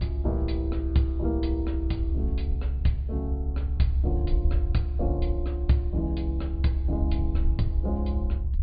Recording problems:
treble missing; nothing above 4.8 kHz
rumble; below 68 Hz, strongest tone 68 Hz, SNR -2 dB

